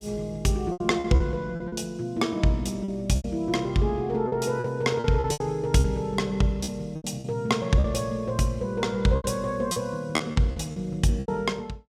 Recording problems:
packet loss; 10% of the sound replaced, filled with repeated pitch periods

